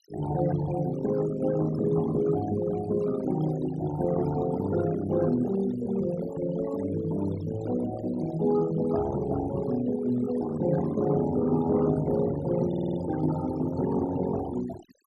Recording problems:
noise reduction artefacts; signal-to-artefact ratio 14 dB
stutter; at 13 s

